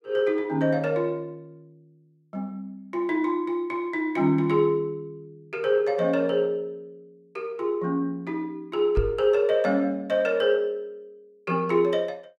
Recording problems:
microphone thump; at 9 s; peak +3 dB vs average level

